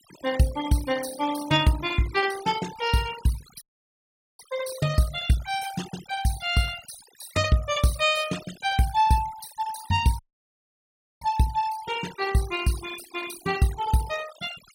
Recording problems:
noise reduction artefacts; signal-to-artefact ratio 13 dB
dropout; at 3.5 s for 1 s and at 10 s for 1 s

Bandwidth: 16.5 kHz